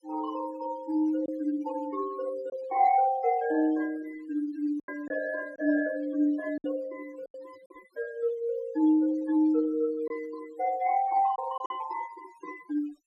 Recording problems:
noise reduction artefacts; signal-to-artefact ratio 21 dB
lost packets; 3% of the sound replaced, filled with silence

